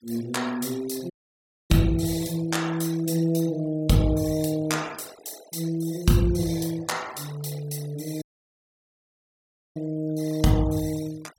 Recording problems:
denoising artefacts; signal-to-artefact ratio 20 dB
audio cutting out; at 1 s for 0.5 s and at 8 s for 1.5 s

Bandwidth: 17 kHz